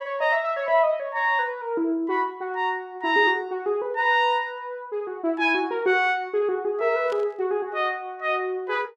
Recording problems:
static burst; at 7 s; peak -13 dB vs average level

